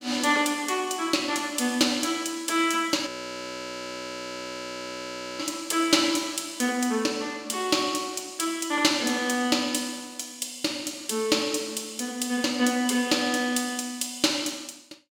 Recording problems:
audio freezing; at 3 s for 2.5 s

